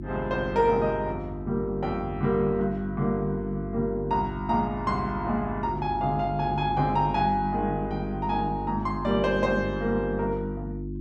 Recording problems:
hum; 50 Hz, harmonics up to 350 Hz, SNR 8 dB

